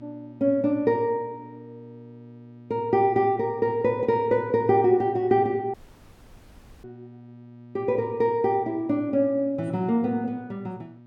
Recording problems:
mains hum; 60 Hz, harmonics up to 960 Hz, SNR 22 dB
dropout; at 5.5 s for 1 s

